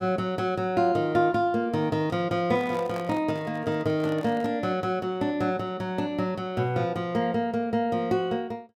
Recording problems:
handling noise; from 2.5 to 4.5 s; peak -8 dB vs average level

